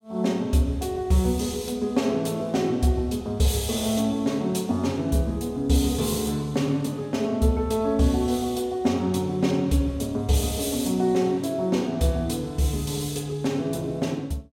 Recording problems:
none

